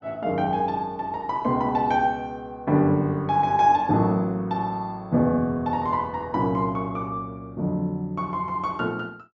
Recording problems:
treble missing; nothing above 8 kHz

